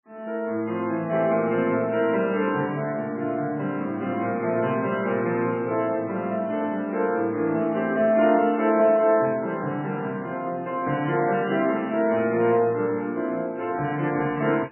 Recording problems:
codec artefacts; MP3, log-spectral distance 3 dB, nothing above 2.9 kHz

